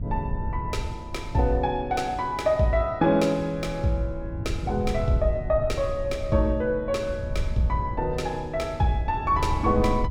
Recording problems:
electrical hum; 60 Hz, harmonics up to 840 Hz, SNR 24 dB
wind noise; below 100 Hz, SNR 8 dB

